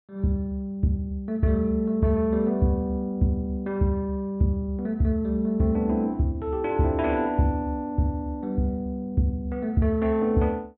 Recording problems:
treble cut off; nothing above 4 kHz

